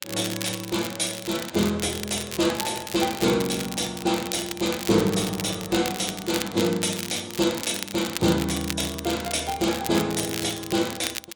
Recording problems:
lossy codec; AAC, log-spectral distance 4 dB
crackle; vinyl, SNR 8 dB

